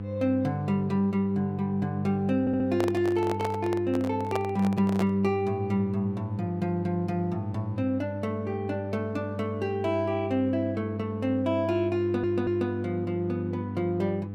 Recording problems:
hum; 50 Hz, harmonics up to 500 Hz, SNR 7 dB
audio stuttering; at 2.5 s and at 12 s
handling noise; from 2.5 to 5 s; peak 0 dB vs average level

